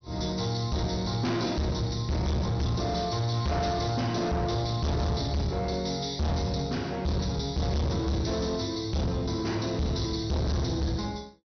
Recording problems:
treble missing; nothing above 6.3 kHz
distorted audio; soft clipping, signal-to-distortion ratio 7 dB

